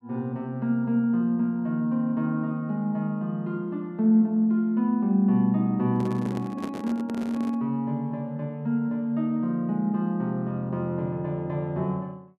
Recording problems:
handling noise; from 6 to 7.5 s; peak -5 dB vs average level

